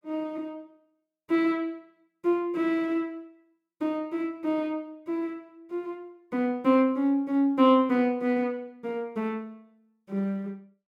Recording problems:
none

